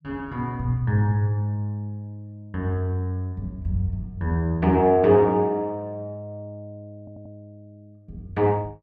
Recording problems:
stutter; at 7 s

